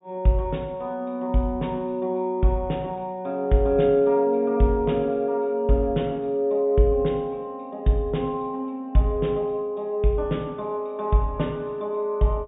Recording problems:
treble missing; nothing above 3.7 kHz

